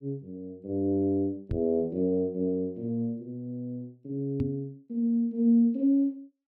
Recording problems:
microphone bump; at 1.5 s and at 4.5 s; peak +1 dB vs average level

